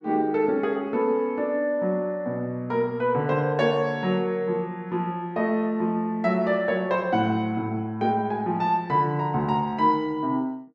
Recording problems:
none

